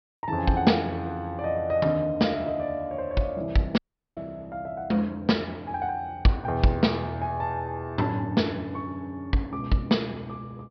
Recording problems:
treble missing; nothing above 5.5 kHz
dropout; at 4 s

